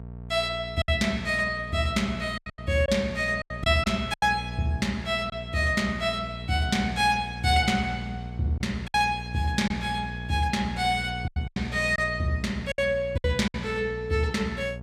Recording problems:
hum; 60 Hz, harmonics up to 900 Hz, SNR 11 dB
packet loss; 6% of the sound replaced, filled with silence

